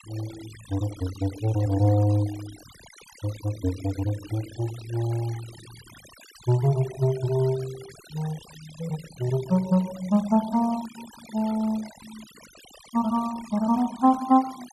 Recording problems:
noise reduction artefacts; signal-to-artefact ratio 19 dB

